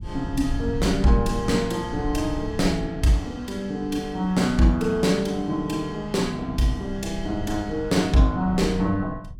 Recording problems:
low-frequency rumble; below 100 Hz, SNR 12 dB

